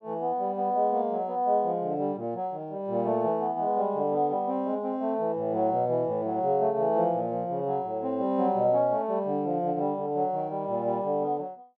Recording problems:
none

